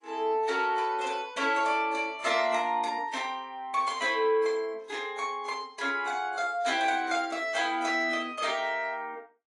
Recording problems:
lossy compression; AAC, log-spectral distance 2 dB, nothing above 10.1 kHz

